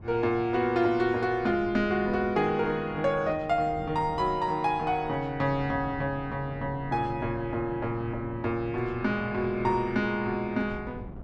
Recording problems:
wind on the microphone; below 250 Hz, SNR 16 dB

